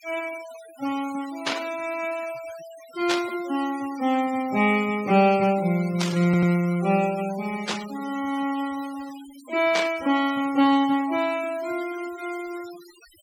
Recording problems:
denoising artefacts; signal-to-artefact ratio 17 dB
burst of static; 5 times, first at 1.5 s; peak +2 dB vs average level
stutter; at 6 s

